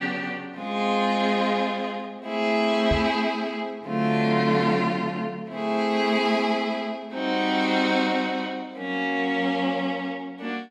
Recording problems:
microphone thump; at 3 s; peak +1 dB vs average level

